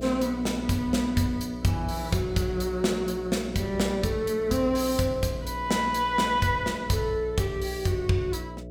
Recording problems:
hum; 60 Hz, harmonics up to 660 Hz, SNR 13 dB

